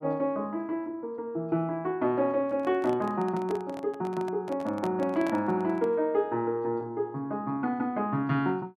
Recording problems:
microphone handling noise; from 2.5 to 6 s; peak -4 dB vs average level

